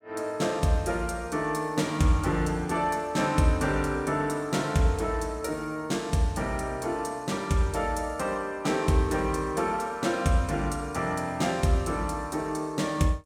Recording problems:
none

